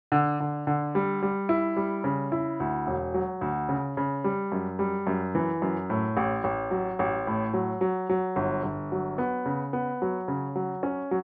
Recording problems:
treble cut off; nothing above 5.5 kHz

